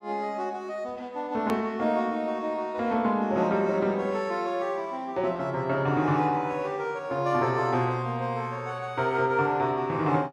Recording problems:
hard cut with a click; at 1.5 s

